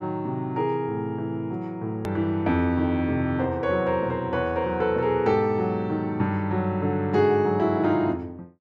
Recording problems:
edit click; at 2 s

